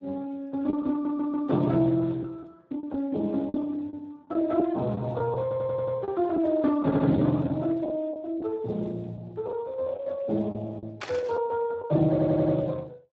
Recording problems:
codec artefacts; Speex, log-spectral distance 2 dB
lost packets; 5% of the sound replaced, filled with the last packet
stutter; 4 times, first at 1 s
static burst; at 11 s; peak -3 dB vs average level

